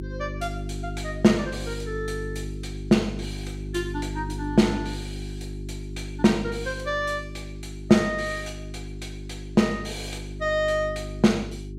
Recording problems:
hum; 50 Hz, harmonics up to 400 Hz, SNR 10 dB

